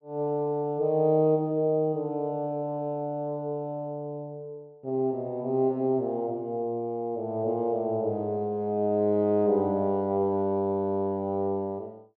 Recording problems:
treble missing; nothing above 6.8 kHz

